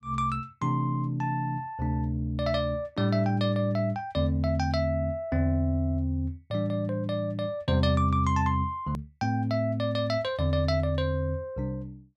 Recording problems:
hard cut with a click; at 9 s

